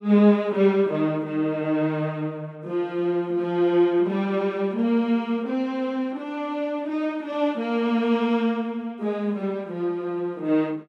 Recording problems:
none

